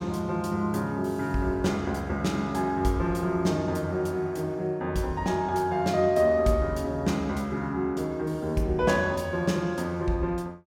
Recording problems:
none

